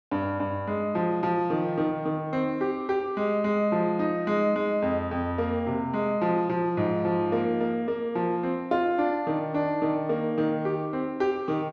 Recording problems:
none

